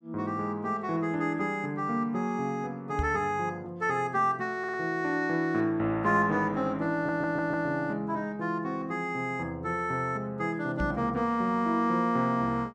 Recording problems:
microphone thump; at 3 s and at 11 s; peak +1 dB vs average level
stutter; at 4.5 s and at 7 s

